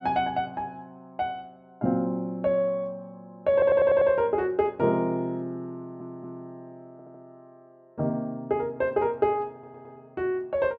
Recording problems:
stutter; 4 times, first at 3.5 s

